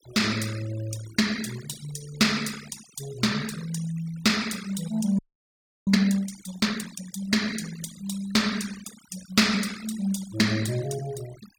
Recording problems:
denoising artefacts; signal-to-artefact ratio 15 dB
audio freezing; at 5 s for 0.5 s

